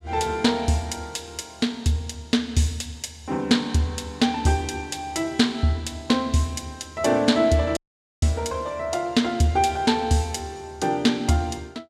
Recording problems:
dropout; at 8 s

